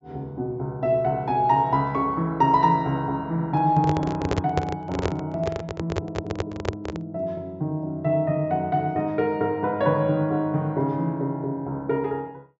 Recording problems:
treble missing; nothing above 8 kHz
microphone handling noise; from 3.5 to 7 s; peak +3 dB vs average level

